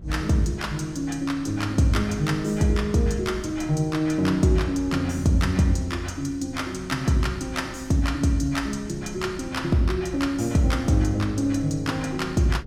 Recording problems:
wind noise; below 180 Hz, SNR 18 dB

